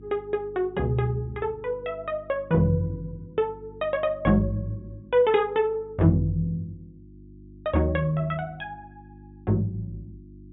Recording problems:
treble cut off; nothing above 4 kHz
mains hum; 50 Hz, harmonics up to 350 Hz, SNR 22 dB

